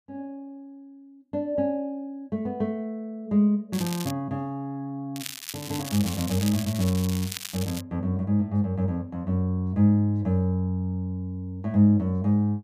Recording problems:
crackling; at 3.5 s and from 5 to 8 s; loose cable, SNR 9 dB

